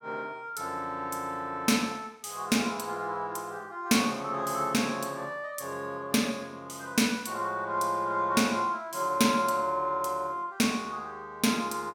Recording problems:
none

